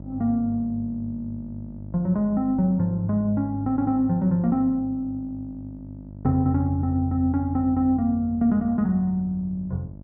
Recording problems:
mains hum; 50 Hz, harmonics up to 700 Hz, SNR 17 dB

